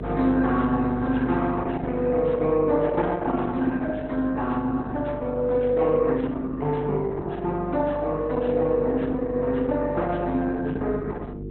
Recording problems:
lossy compression; Opus, log-spectral distance 3 dB, nothing above 4 kHz
hum; 50 Hz, harmonics up to 450 Hz, SNR 12 dB

